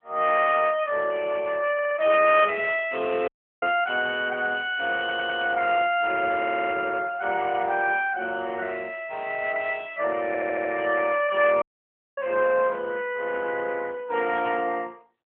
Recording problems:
phone line; 260 Hz to 3.3 kHz, AMR-NB
stutter; 4 times, first at 1.5 s
audio cutting out; at 3.5 s and at 12 s for 0.5 s

